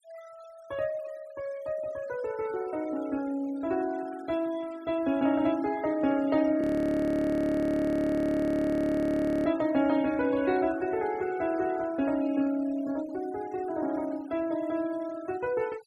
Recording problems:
denoising artefacts; signal-to-artefact ratio 21 dB
frozen audio; at 6.5 s for 3 s

